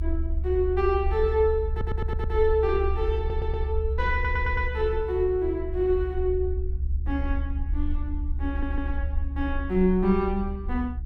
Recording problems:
hum; 60 Hz, harmonics up to 360 Hz, SNR 20 dB
low-frequency rumble; below 70 Hz, SNR 3 dB
audio stuttering; 4 times, first at 1.5 s

